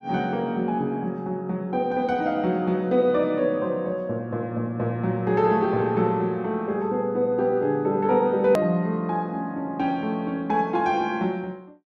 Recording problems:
click at an edit; at 8.5 s

